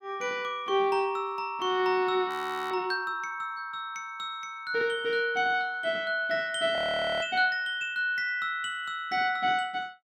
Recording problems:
audio freezing; at 2.5 s and at 7 s

